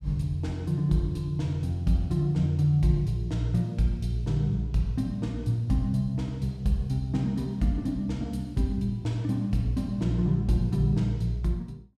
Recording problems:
none

